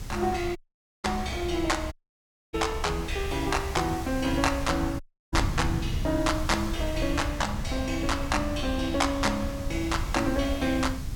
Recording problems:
hiss; slope -2 dB per octave, SNR 16 dB
rumble; below 92 Hz, SNR 7 dB
wind on the microphone; below 170 Hz, SNR 13 dB
dropout; at 0.5 s, at 2 s for 0.5 s and at 5 s

